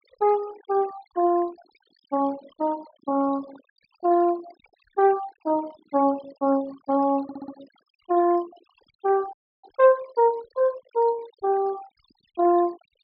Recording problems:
low-pass filter; nothing above 5.5 kHz
noise reduction artefacts; signal-to-artefact ratio 22 dB
stutter; at 7 s
audio freezing; at 9.5 s

